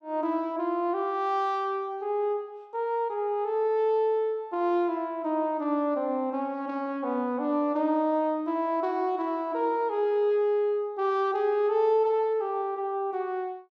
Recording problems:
none

